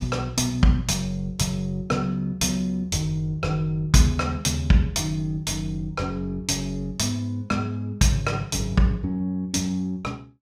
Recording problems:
none

